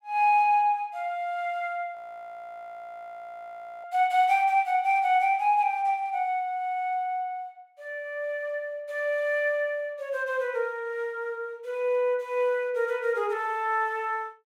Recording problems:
audio freezing; at 2 s for 2 s

